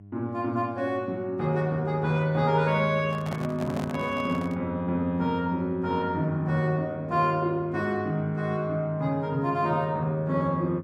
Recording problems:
electrical hum; 50 Hz, harmonics up to 400 Hz, SNR 19 dB
microphone handling noise; from 3 to 4.5 s; peak -3 dB vs average level

